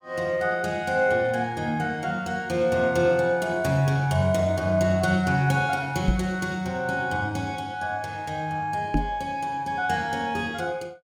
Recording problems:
microphone thump; at 6 s and at 9 s; peak +5 dB vs average level

